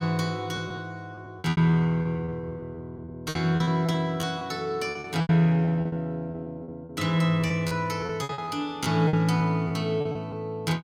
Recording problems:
packet loss; 14% of the sound replaced, filled with repeated pitch periods

